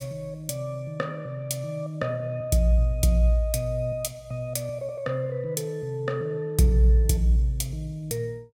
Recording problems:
none

